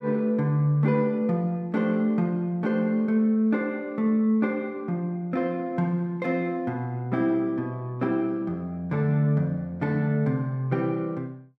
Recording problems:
none

